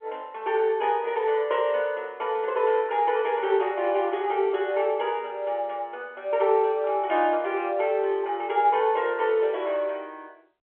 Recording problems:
telephone audio; 300 Hz to 3.4 kHz, G.711

